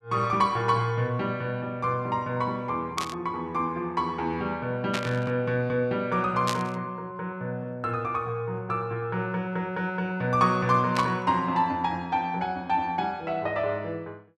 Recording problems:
burst of static; 4 times, first at 3 s; peak +2 dB vs average level

